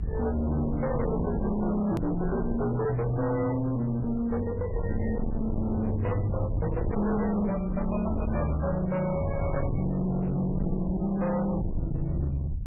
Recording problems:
codec artefacts; MP3, then MP3, log-spectral distance 2 dB, nothing above 13.1 kHz
distorted audio; hard clipping, uneven, signal-to-distortion ratio 6 dB
rumble; below 160 Hz, SNR 6 dB
click at an edit; at 2 s

